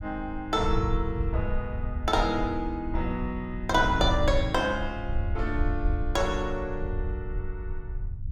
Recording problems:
low-frequency rumble; below 78 Hz, SNR 4 dB

